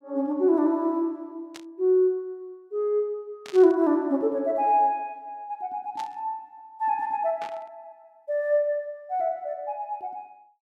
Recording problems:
static burst; 4 times, first at 1.5 s; peak -11 dB vs average level

